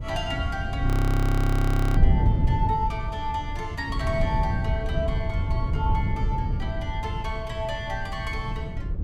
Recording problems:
wind on the microphone; below 120 Hz, SNR -4 dB
audio freezing; at 1 s for 1 s

